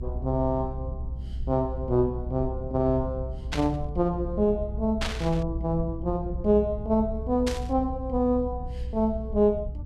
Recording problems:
low-frequency rumble; below 72 Hz, strongest tone 62 Hz, SNR 8 dB
burst of static; at 3.5 s, at 5 s and at 7.5 s; peak 0 dB vs average level

